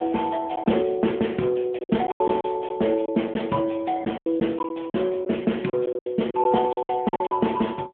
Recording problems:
telephone audio; 150 Hz to 3.6 kHz, AMR-NB
lost packets; 11% of the sound replaced, filled with silence

